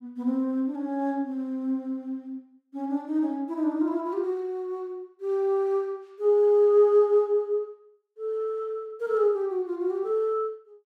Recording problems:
none

